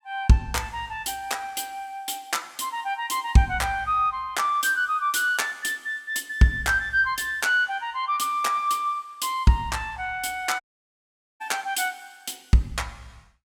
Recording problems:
audio cutting out; at 11 s for 1 s

